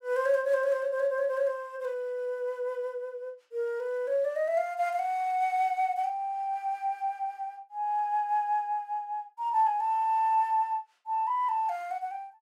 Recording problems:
none

